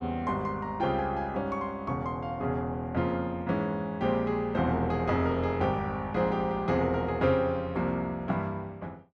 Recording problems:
none

